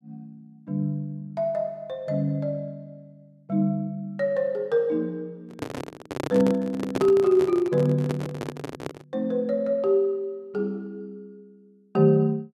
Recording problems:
handling noise; from 5.5 to 9 s; peak +1 dB vs average level

